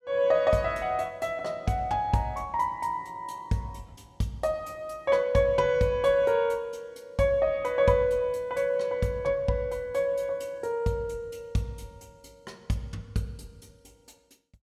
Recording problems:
none

